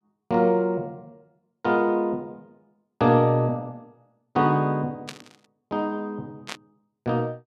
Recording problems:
burst of static; at 5 s and at 6.5 s; peak -5 dB vs average level

